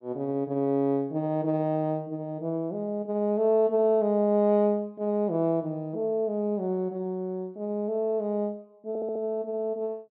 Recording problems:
stutter; at 9 s

